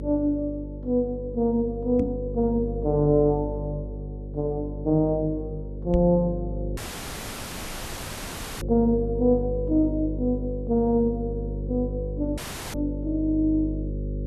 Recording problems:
hum; 50 Hz, harmonics up to 550 Hz, SNR 8 dB
microphone bump; at 2 s and at 6 s; peak +1 dB vs average level
audio cutting out; at 7 s for 2 s and at 12 s

